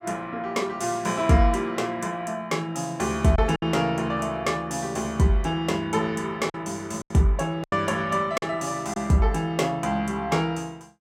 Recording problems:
lost packets; 3% of the sound replaced, filled with silence

